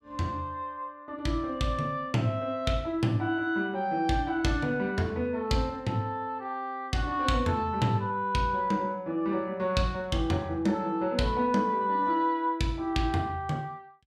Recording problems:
none

